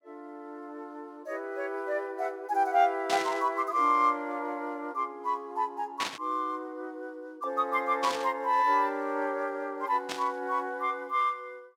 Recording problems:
burst of static; 4 times, first at 3 s; peak +1 dB vs average level

